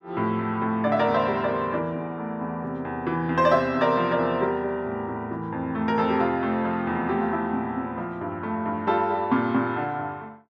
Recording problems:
none

